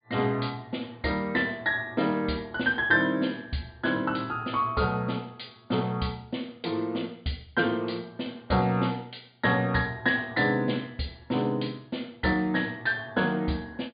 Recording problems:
treble cut off; nothing above 4.8 kHz

